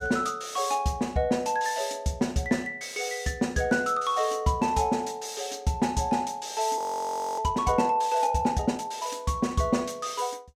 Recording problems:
audio freezing; at 7 s for 0.5 s

